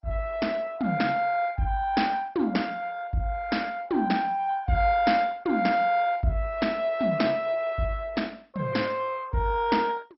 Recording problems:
lossy codec; MP2, log-spectral distance 3 dB, nothing above 5.5 kHz

